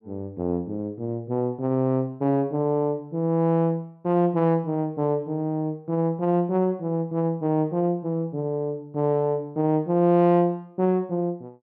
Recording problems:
none

